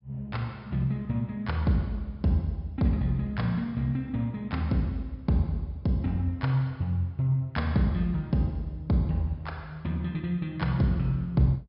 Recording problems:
treble missing; nothing above 5.5 kHz

